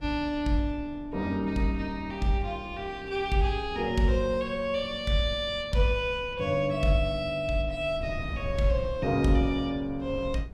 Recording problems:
wind on the microphone; below 130 Hz, SNR 15 dB

